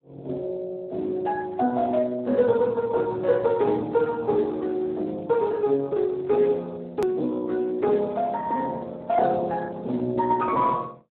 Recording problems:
telephone audio; 220 Hz to 2.8 kHz, Speex
hard cut with a click; at 7 s

